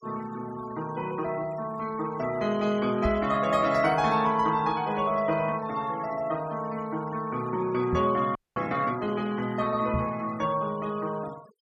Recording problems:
denoising artefacts; signal-to-artefact ratio 20 dB
knock on the microphone; at 3 s, at 8 s and at 10 s; peak +1 dB vs average level
audio freezing; at 8.5 s

